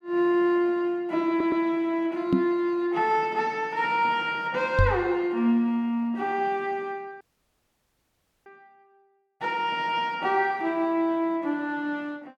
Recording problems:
stutter; at 1.5 s
knock on the microphone; at 2.5 s and at 5 s; peak +6 dB vs average level
dropout; at 7 s for 1.5 s

